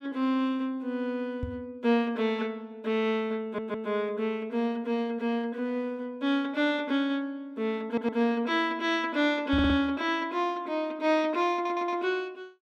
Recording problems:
knock on the microphone; at 1.5 s and at 9.5 s; peak -2 dB vs average level
stutter; 4 times, first at 3.5 s

